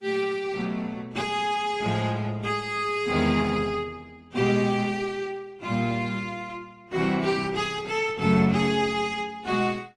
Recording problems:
codec artefacts; Opus, then AAC, log-spectral distance 3 dB

